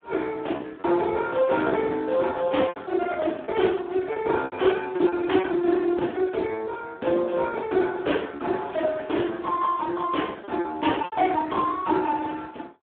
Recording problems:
phone line; 240 Hz to 3.4 kHz, Speex
lost packets; 5% of the sound replaced, filled with repeated pitch periods

